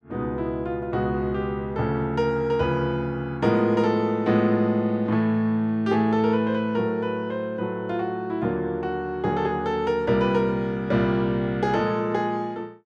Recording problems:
none

